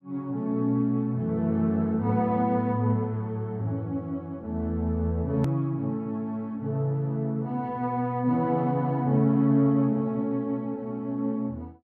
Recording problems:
edit click; at 5.5 s

